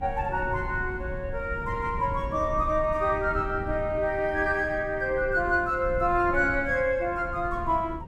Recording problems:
wind noise; below 130 Hz, SNR 11 dB

